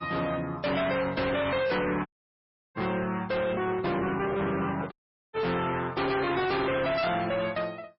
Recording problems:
codec artefacts; MP3, log-spectral distance 4 dB, nothing above 5.3 kHz
distortion; hard clipping, signal-to-distortion ratio 6 dB
audio cutting out; at 2 s for 0.5 s and at 5 s
microphone handling noise; from 3.5 to 5 s; peak -3 dB vs average level

